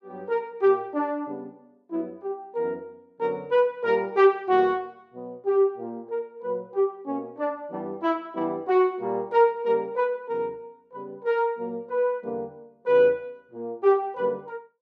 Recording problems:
none

